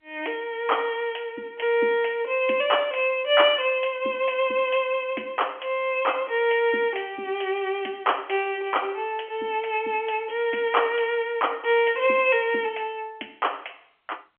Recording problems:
phone line; 240 Hz to 3.3 kHz, G.711

